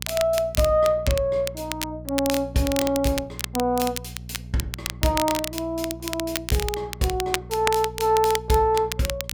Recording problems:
electrical hum; 60 Hz, harmonics up to 420 Hz, SNR 16 dB
crackling; vinyl, SNR 8 dB

